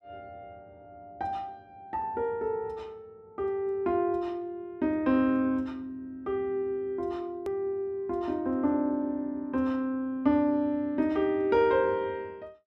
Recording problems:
click at an edit; at 7.5 s

